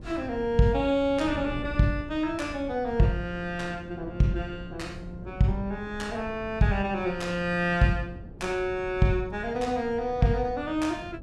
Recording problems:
wind noise; below 200 Hz, SNR 15 dB

